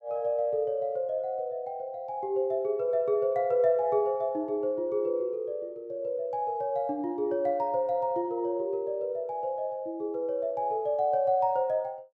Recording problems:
none

